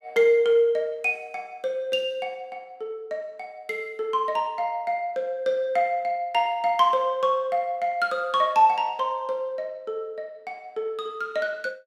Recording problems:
none

